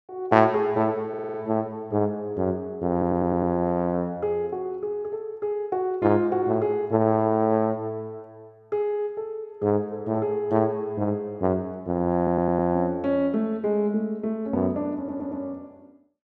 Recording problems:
stutter; 4 times, first at 1 s

